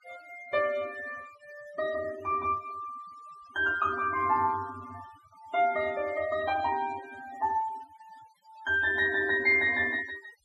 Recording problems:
noise reduction artefacts; signal-to-artefact ratio 20 dB

